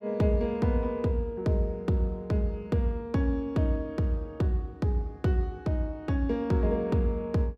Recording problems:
none

